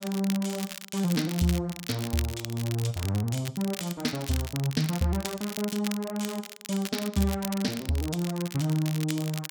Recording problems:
crackling; vinyl, SNR 9 dB

